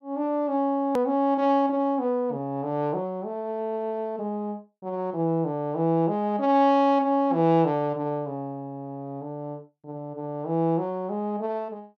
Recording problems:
edit click; at 1 s

